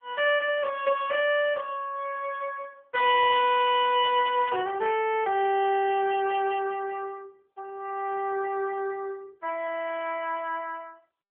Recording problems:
telephone audio; 340 Hz to 3.4 kHz, AMR-NB

